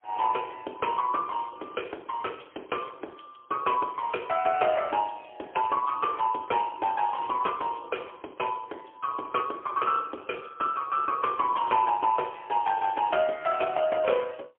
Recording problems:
telephone audio; 300 Hz to 3.2 kHz, AMR-NB, then MP3

